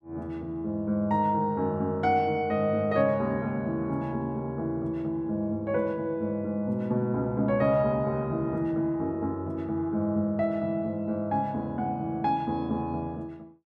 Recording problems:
none

